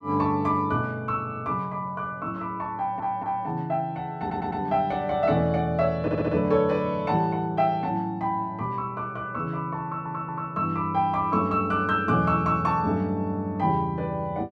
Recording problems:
audio stuttering; 4 times, first at 3 s

